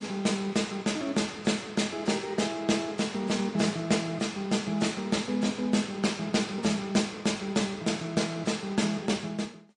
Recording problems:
lossy codec; MP3, then AAC, log-spectral distance 4 dB, nothing above 8.5 kHz

